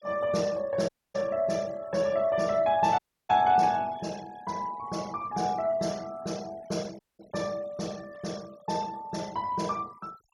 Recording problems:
denoising artefacts; signal-to-artefact ratio 22 dB
audio cutting out; at 1 s, at 3 s and at 7 s

